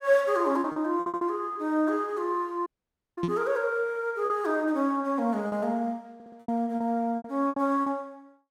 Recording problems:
lost packets; 8% of the sound replaced, filled with repeated pitch periods
audio stuttering; at 1 s and at 6 s
audio cutting out; at 2.5 s for 0.5 s
knock on the microphone; at 3 s; peak +2 dB vs average level

